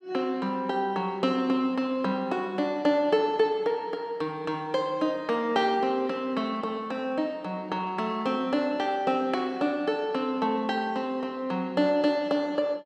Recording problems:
none

